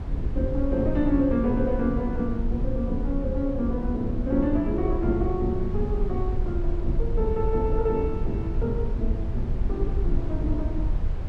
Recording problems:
low-frequency rumble; below 72 Hz, SNR 2 dB

